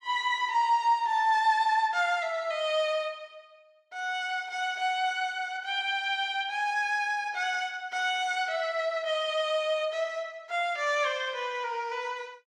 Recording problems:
none

